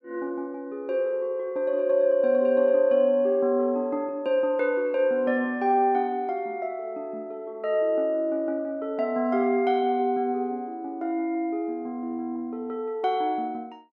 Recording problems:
none

